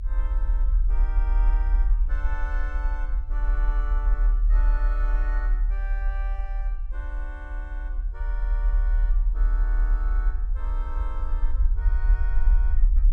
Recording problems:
low-frequency rumble; below 40 Hz, strongest tone 38 Hz, SNR -15 dB

